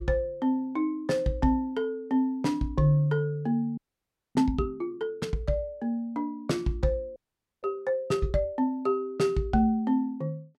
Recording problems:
audio freezing; at 4 s for 0.5 s and at 7 s

